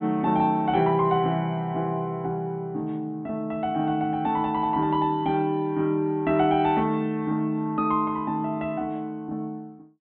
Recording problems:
treble cut off; nothing above 4 kHz

